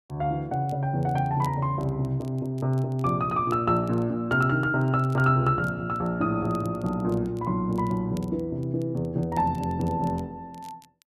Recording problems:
crackle; vinyl, SNR 29 dB

